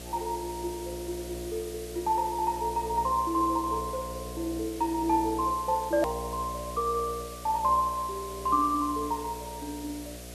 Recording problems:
hum; 60 Hz, harmonics up to 720 Hz, SNR 13 dB
background hiss; slope +2 dB per octave, SNR 15 dB
click at an edit; at 6 s

